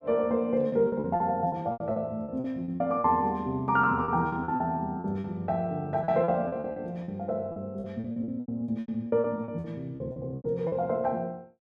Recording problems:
packet loss; 15% of the sound replaced, filled with repeated pitch periods

